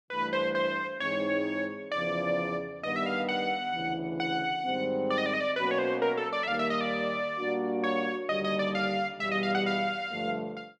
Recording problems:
none

